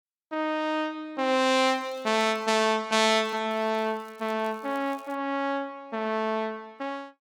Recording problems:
crackling; at 1.5 s, at 3 s and from 3.5 to 5 s; loose cable, SNR 30 dB

